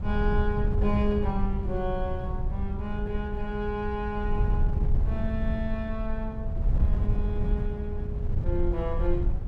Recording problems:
wind on the microphone; below 86 Hz, SNR -2 dB

